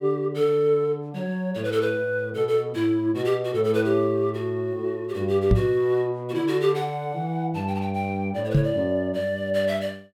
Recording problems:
microphone bump; at 5.5 s and at 8.5 s; peak +8 dB vs average level

